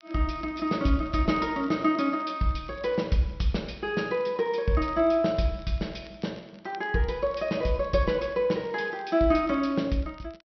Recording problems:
treble missing; nothing above 5.8 kHz
crackle; vinyl, SNR 29 dB

